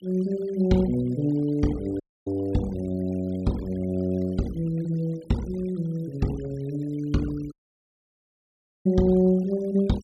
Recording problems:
denoising artefacts; signal-to-artefact ratio 24 dB
dropout; at 2 s and at 7.5 s for 1.5 s

